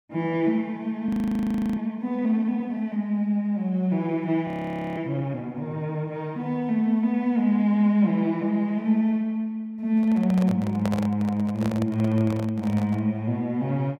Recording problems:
frozen audio; at 1 s for 0.5 s and at 4.5 s for 0.5 s
microphone handling noise; from 10 to 13 s; peak -2 dB vs average level

